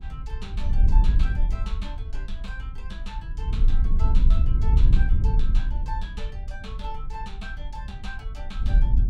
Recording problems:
wind noise; below 56 Hz, SNR -15 dB

